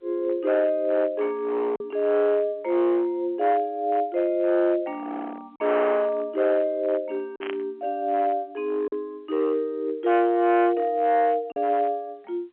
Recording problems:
phone line; 950 Hz to 2.8 kHz, G.711
distortion; hard clipping, uneven, signal-to-distortion ratio 11 dB
lost packets; 1.6% of the sound replaced, filled with silence
static burst; at 7.5 s; peak -7 dB vs average level

